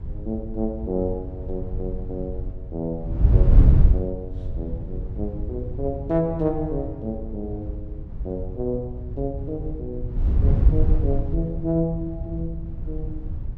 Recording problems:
wind noise; below 96 Hz, SNR -3 dB

